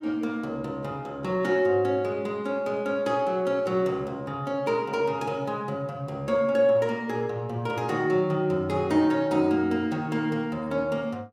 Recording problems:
none

